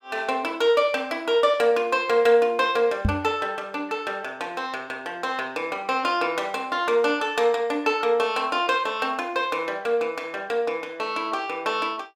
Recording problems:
knock on the microphone; at 3 s; peak +4 dB vs average level

